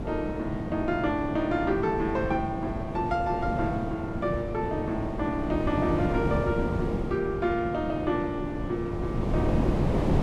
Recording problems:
wind on the microphone; below 380 Hz, SNR 2 dB

